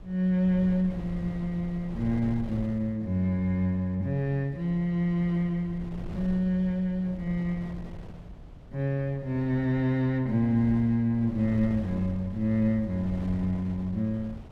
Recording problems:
wind on the microphone; below 190 Hz, SNR 15 dB

